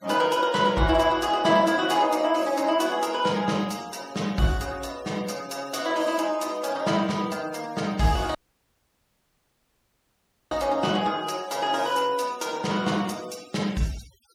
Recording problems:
denoising artefacts; signal-to-artefact ratio 21 dB
dropout; at 8.5 s for 2 s

